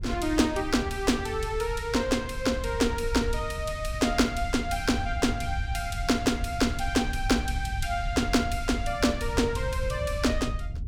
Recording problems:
wind on the microphone; below 92 Hz, SNR 7 dB

